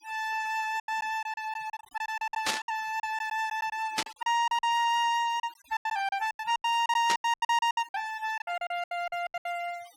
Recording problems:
noise reduction artefacts; signal-to-artefact ratio 21 dB
packet loss; 18% of the sound replaced, filled with silence
burst of static; at 2.5 s, at 4 s and at 7 s; peak +6 dB vs average level

